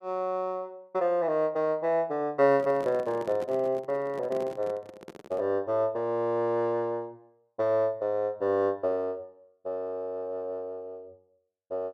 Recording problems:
handling noise; from 2.5 to 5.5 s; peak -8 dB vs average level

